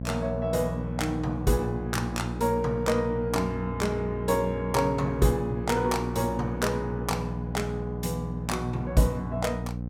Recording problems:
hum; 60 Hz, harmonics up to 540 Hz, SNR 5 dB

